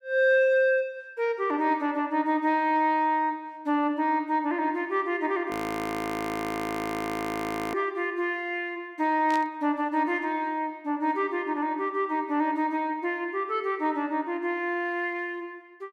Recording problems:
audio freezing; at 5.5 s for 2 s
static burst; at 9.5 s; peak -8 dB vs average level

